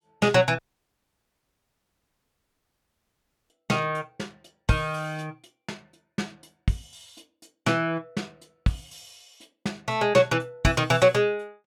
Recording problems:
audio cutting out; at 0.5 s for 3 s

